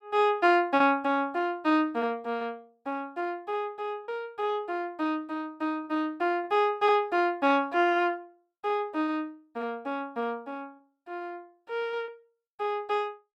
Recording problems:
packet loss; 1.8% of the sound replaced, filled with repeated pitch periods

